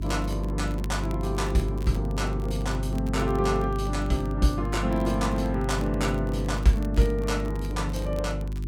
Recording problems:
mains hum; 50 Hz, harmonics up to 400 Hz, SNR 3 dB
crackling; vinyl, SNR 23 dB

